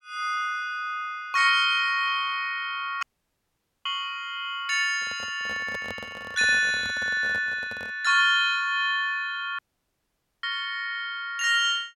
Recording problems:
dropout; at 3 s for 1 s and at 9.5 s for 1 s
microphone handling noise; from 5 to 8 s; peak -9 dB vs average level

